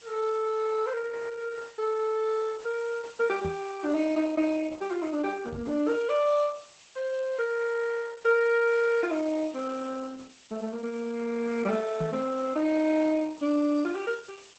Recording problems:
lossy compression; Opus, log-spectral distance 6 dB, nothing above 8 kHz
background hiss; SNR 25 dB
microphone bump; at 3.5 s, at 5.5 s and at 12 s; peak -2 dB vs average level

